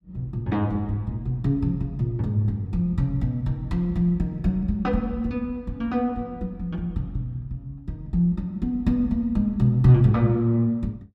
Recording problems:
none

